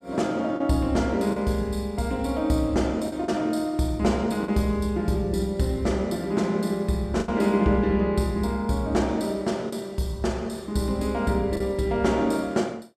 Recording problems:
lost packets; 3% of the sound replaced, filled with the last packet

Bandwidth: 14.5 kHz